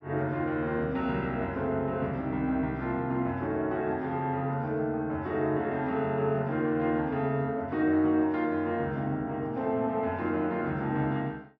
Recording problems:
none

